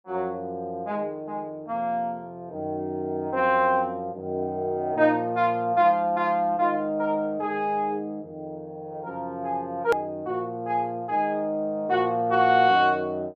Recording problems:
edit click; at 10 s

